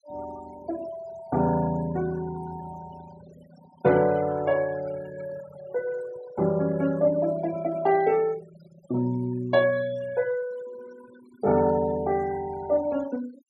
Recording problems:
denoising artefacts; signal-to-artefact ratio 19 dB

